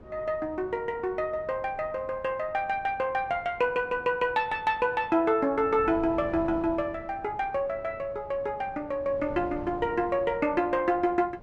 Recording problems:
wind on the microphone; below 500 Hz, SNR 18 dB

